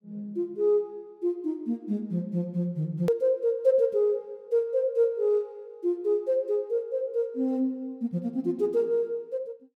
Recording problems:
click at an edit; at 3 s

